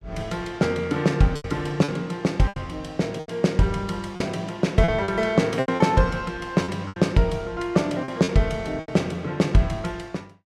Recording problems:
packet loss; 8% of the sound replaced, filled with repeated pitch periods

